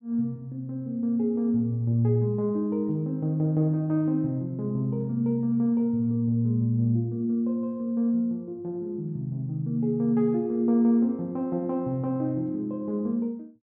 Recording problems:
none

